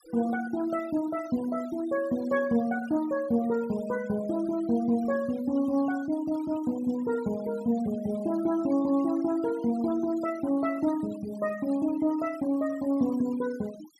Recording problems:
denoising artefacts; signal-to-artefact ratio 20 dB

